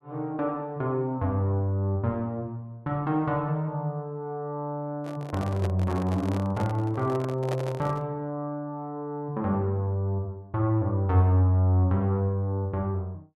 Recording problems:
handling noise; from 5 to 8 s; peak -1 dB vs average level

